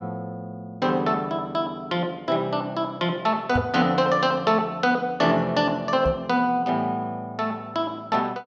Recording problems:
microphone bump; at 3.5 s and at 6 s; peak 0 dB vs average level

